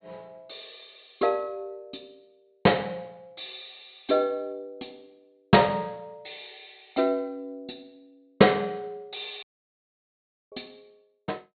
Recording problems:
treble cut off; nothing above 4.4 kHz
dropout; at 9.5 s for 1 s

